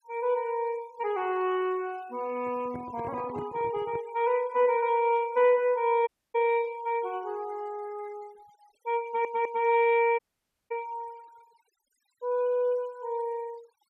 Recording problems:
denoising artefacts; signal-to-artefact ratio 26 dB
microphone handling noise; from 2.5 to 4 s; peak -8 dB vs average level
dropout; at 6 s and at 10 s for 0.5 s
audio stuttering; at 9 s

